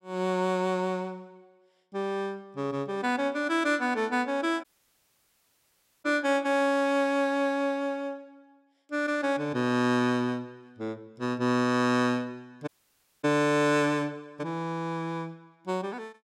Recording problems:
audio cutting out; at 4.5 s for 1.5 s and at 13 s for 0.5 s

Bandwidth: 16 kHz